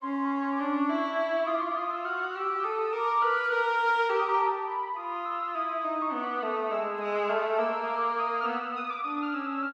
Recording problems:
none

